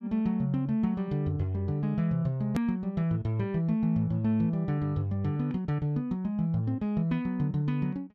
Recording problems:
edit click; at 2.5 s

